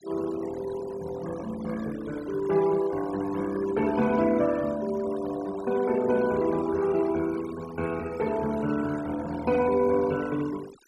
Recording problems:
denoising artefacts; signal-to-artefact ratio 18 dB

